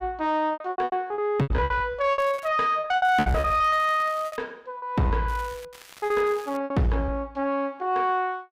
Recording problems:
distortion; soft clipping, signal-to-distortion ratio 11 dB
packet loss; 16% of the sound replaced, filled with repeated pitch periods
crackling; 4 times, first at 2 s; loose cable, SNR 22 dB

